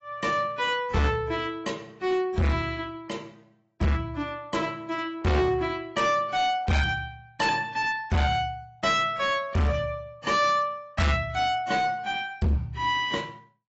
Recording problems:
lossy codec; AAC, log-spectral distance 2 dB, nothing above 7.3 kHz
distorted audio; hard clipping, signal-to-distortion ratio 7 dB

